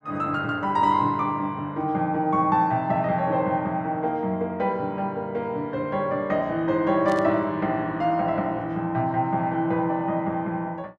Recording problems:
burst of static; at 7 s; peak -12 dB vs average level

